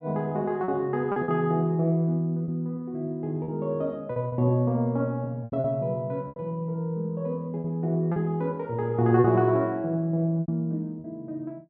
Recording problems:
lost packets; 6% of the sound replaced, filled with repeated pitch periods

